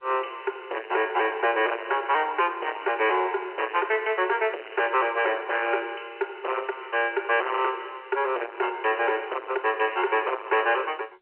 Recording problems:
telephone audio; 320 Hz to 3.1 kHz, G.711
distortion; soft clipping, signal-to-distortion ratio 8 dB

